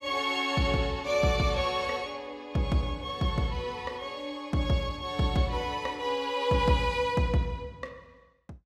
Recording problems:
none

